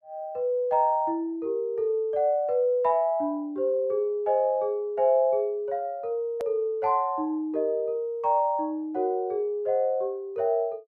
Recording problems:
click at an edit; at 6.5 s

